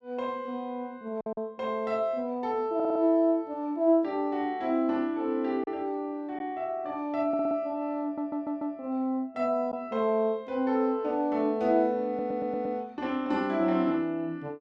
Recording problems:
lost packets; 1.1% of the sound replaced, filled with silence
stutter; 4 times, first at 3 s

